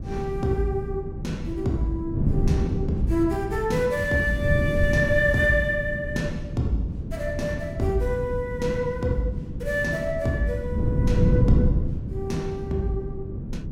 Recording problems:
wind on the microphone; below 180 Hz, SNR 2 dB

